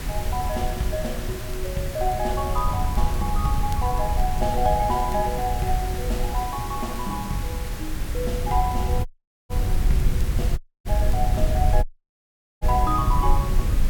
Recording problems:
hiss; slope -3 dB per octave, SNR 9 dB
rumble; below 72 Hz, SNR 0 dB
crackling; vinyl, SNR 27 dB
dropout; at 9 s, at 11 s and at 12 s for 1 s

